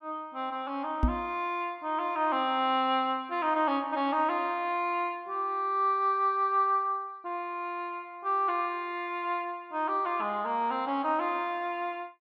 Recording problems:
knock on the microphone; at 1 s; peak +7 dB vs average level

